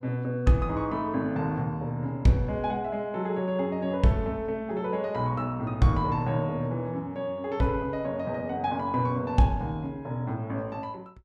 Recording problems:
none

